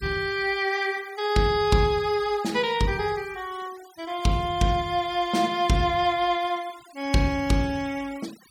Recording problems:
denoising artefacts; signal-to-artefact ratio 22 dB

